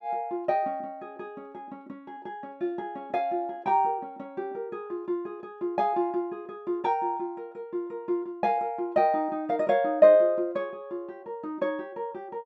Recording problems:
none

